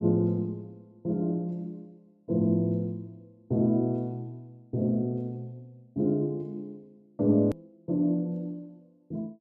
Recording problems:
edit click; at 7.5 s

